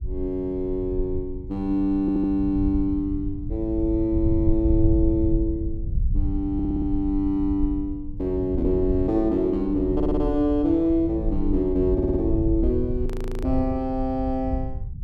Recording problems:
low-frequency rumble; below 86 Hz, SNR 6 dB
audio stuttering; 4 times, first at 2 s
frozen audio; at 13 s

